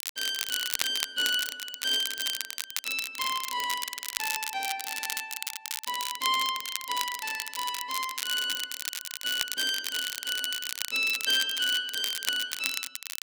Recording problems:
crackling; vinyl, SNR 3 dB

